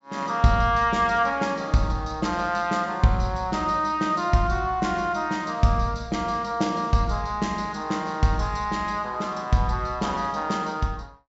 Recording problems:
low-pass filter; nothing above 8 kHz

